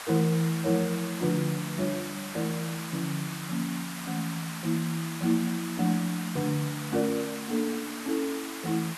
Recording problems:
hiss; SNR 8 dB

